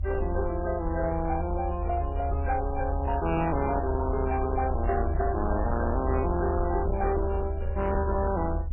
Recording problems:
lossy codec; MP3, log-spectral distance 3 dB, nothing above 2.5 kHz
distorted audio; hard clipping, signal-to-distortion ratio 11 dB
rumble; below 76 Hz, SNR 2 dB

